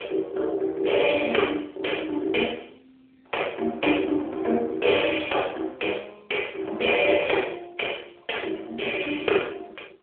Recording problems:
phone line; 320 Hz to 3.5 kHz, AMR-NB

